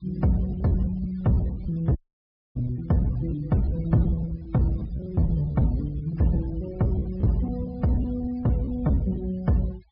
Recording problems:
treble missing; nothing above 5.5 kHz
noise reduction artefacts; signal-to-artefact ratio 24 dB
packet loss; 14% of the sound replaced, filled with repeated pitch periods
dropout; at 2 s for 0.5 s

